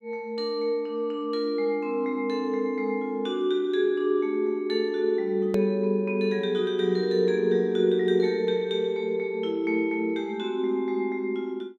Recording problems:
hard cut with a click; at 5.5 s

